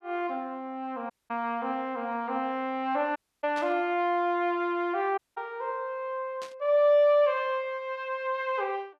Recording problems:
audio cutting out; at 1 s, at 3 s and at 5 s
static burst; at 3.5 s and at 6.5 s; peak -10 dB vs average level

